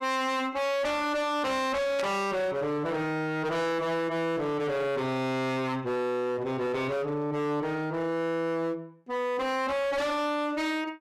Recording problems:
distorted audio; hard clipping, signal-to-distortion ratio 6 dB
static burst; at 2 s; peak -4 dB vs average level

